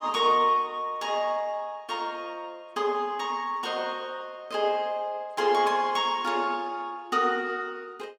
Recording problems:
none

